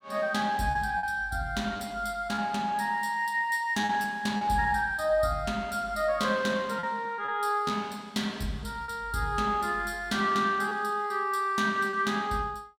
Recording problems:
packet loss; 4% of the sound replaced, filled with repeated pitch periods

